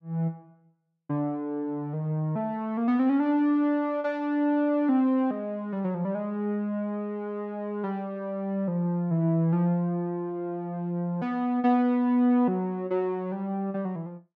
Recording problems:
none

